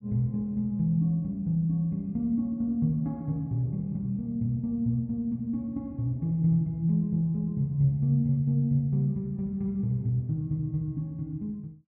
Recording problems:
none

